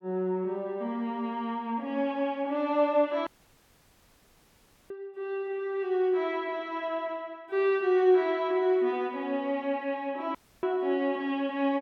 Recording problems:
audio cutting out; at 3.5 s for 1.5 s and at 10 s

